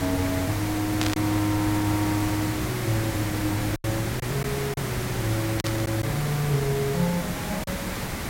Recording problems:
electrical hum; 60 Hz, harmonics up to 1.3 kHz, SNR 19 dB
background hiss; slope -4 dB per octave, SNR 3 dB
lost packets; 3% of the sound replaced, filled with silence
static burst; at 1 s and at 5.5 s; peak +3 dB vs average level

